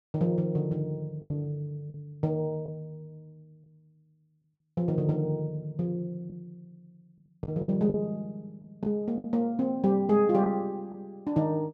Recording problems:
packet loss; 5% of the sound replaced, filled with the last packet

